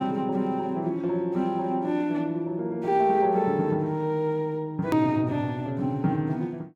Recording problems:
hard cut with a click; at 5 s

